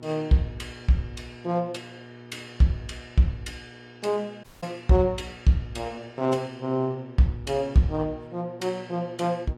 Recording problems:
lossy compression; AAC, log-spectral distance 2 dB
hum; 60 Hz, harmonics up to 1.8 kHz, SNR 20 dB
audio cutting out; at 4.5 s

